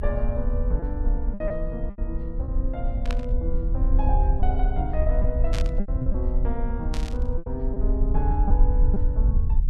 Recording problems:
low-frequency rumble; below 60 Hz, SNR -6 dB
packet loss; 6% of the sound replaced, filled with repeated pitch periods
burst of static; at 3 s, at 5.5 s and at 7 s; peak +2 dB vs average level

